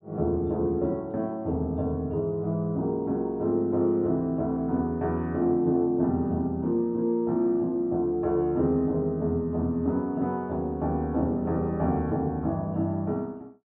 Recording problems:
treble missing; nothing above 4 kHz

